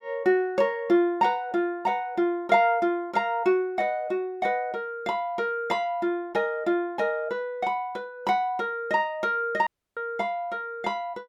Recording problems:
audio cutting out; at 9.5 s

